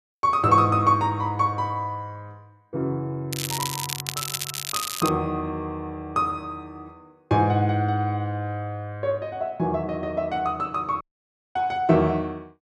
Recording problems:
crackle; from 3.5 to 5 s; loose cable, SNR 4 dB
audio cutting out; at 11 s for 0.5 s

